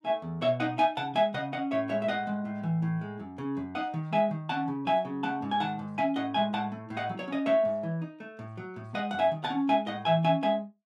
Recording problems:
none

